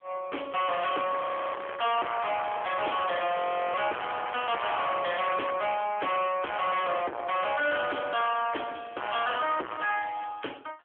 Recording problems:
phone line; 300 Hz to 3.3 kHz, AMR-NB
distortion; soft clipping, signal-to-distortion ratio 5 dB
crackle; from 1 to 5.5 s; loose cable, SNR 10 dB
frozen audio; at 1 s and at 3.5 s

